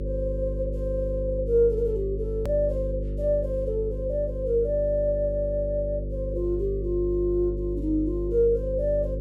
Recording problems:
hum; 50 Hz, harmonics up to 550 Hz, SNR 5 dB
hard cut with a click; at 2.5 s

